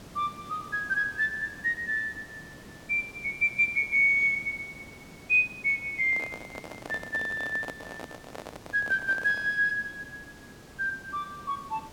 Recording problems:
hiss; slope -5 dB per octave, SNR 21 dB
handling noise; from 6 to 9.5 s; peak -7 dB vs average level

